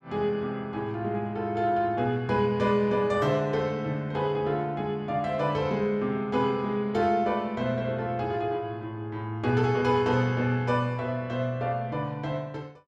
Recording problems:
none

